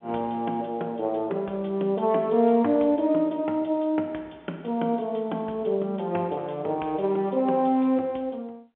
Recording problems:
telephone audio; 240 Hz to 3.5 kHz, G.711

